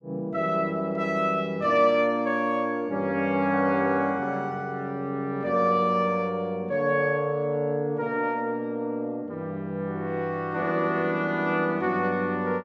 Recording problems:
none

